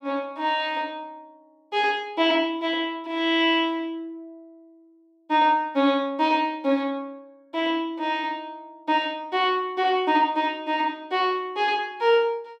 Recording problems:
none

